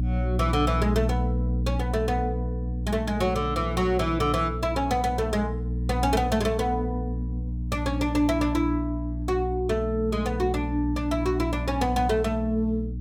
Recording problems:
hum; 60 Hz, harmonics up to 300 Hz, SNR 4 dB

